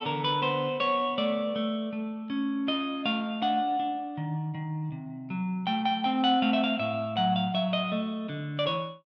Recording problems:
none

